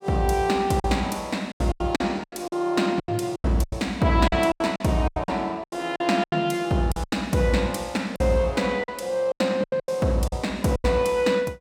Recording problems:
packet loss; 14% of the sound replaced, filled with silence

